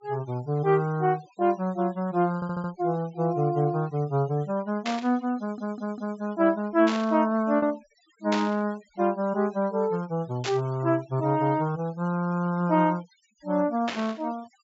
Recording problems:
low-pass filter; nothing above 8 kHz
noise reduction artefacts; signal-to-artefact ratio 25 dB
packet loss; 0.6% of the sound replaced, filled with repeated pitch periods
stutter; at 2.5 s and at 5.5 s
burst of static; 5 times, first at 5 s; peak -1 dB vs average level

